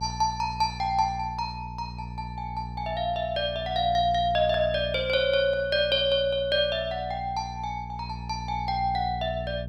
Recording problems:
electrical hum; 60 Hz, harmonics up to 480 Hz, SNR 12 dB

